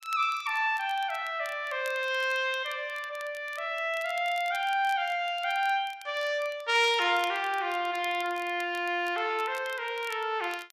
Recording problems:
crackle; vinyl, SNR 22 dB

